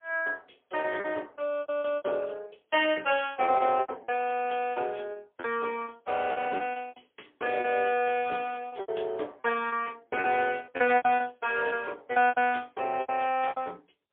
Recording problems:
telephone audio; 300 Hz to 3.4 kHz, AMR-NB, then MP3
packet loss; 14% of the sound replaced, filled with repeated pitch periods

